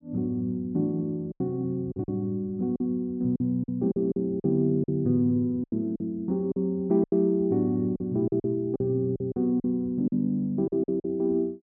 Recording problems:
lost packets; 10% of the sound replaced, filled with silence

